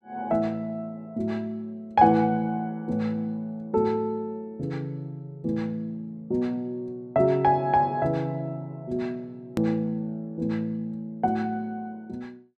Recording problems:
edit click; at 9.5 s

